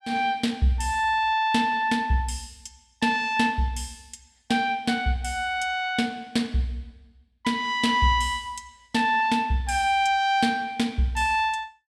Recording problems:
none

